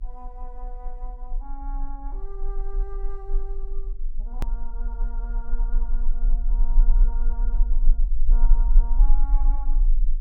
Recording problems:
hum; 50 Hz, harmonics up to 550 Hz, SNR 19 dB
low-frequency rumble; below 34 Hz, strongest tone 20 Hz, SNR -18 dB
hard cut with a click; at 4.5 s

